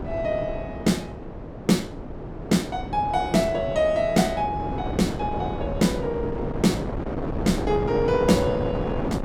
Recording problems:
wind on the microphone; below 520 Hz, SNR 6 dB

